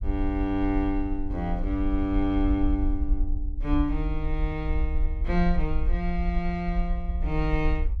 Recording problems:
rumble; below 54 Hz, SNR 2 dB

